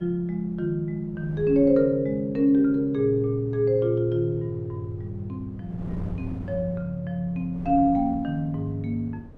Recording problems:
wind noise; below 240 Hz, SNR 18 dB

